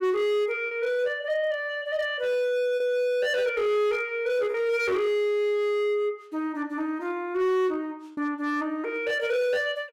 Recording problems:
distortion; hard clipping, signal-to-distortion ratio 12 dB
lost packets; 1.4% of the sound replaced, filled with repeated pitch periods

